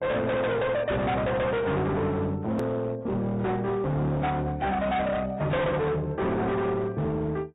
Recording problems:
treble missing; nothing above 4 kHz
lossy compression; AAC, log-spectral distance 2 dB
distorted audio; hard clipping, signal-to-distortion ratio 6 dB
click at an edit; at 2.5 s

